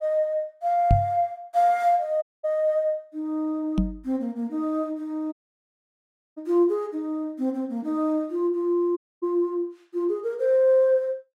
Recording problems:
microphone bump; at 1 s and at 4 s; peak +7 dB vs average level
dropout; at 2 s, at 5.5 s for 1 s and at 9 s

